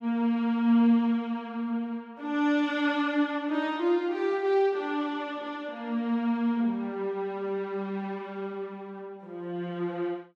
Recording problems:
none

